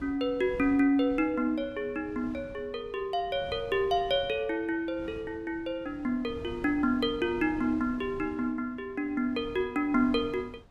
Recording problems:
wind on the microphone; below 300 Hz, SNR 19 dB

